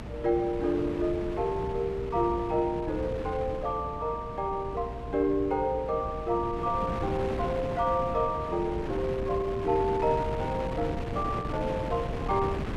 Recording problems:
electrical hum; 60 Hz, harmonics up to 300 Hz, SNR 16 dB
wind on the microphone; below 490 Hz, SNR 7 dB

